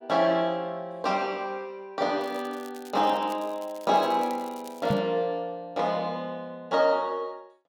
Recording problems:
crackle; from 2 to 5 s; loose cable, SNR 23 dB
microphone thump; at 5 s; peak +4 dB vs average level

